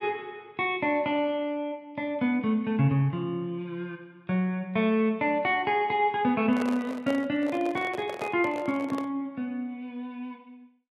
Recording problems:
microphone handling noise; from 6.5 to 9 s; peak -4 dB vs average level

